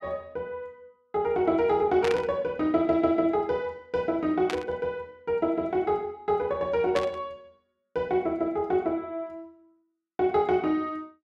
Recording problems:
static burst; at 2 s, at 4.5 s and at 7 s; peak -1 dB vs average level

